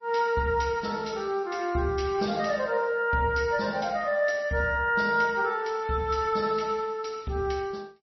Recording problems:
codec artefacts; MP3, log-spectral distance 4 dB, nothing above 5.8 kHz

